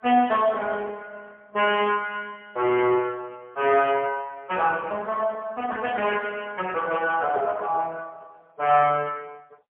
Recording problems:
phone line; 260 Hz to 3.2 kHz, AMR-NB, then MP3

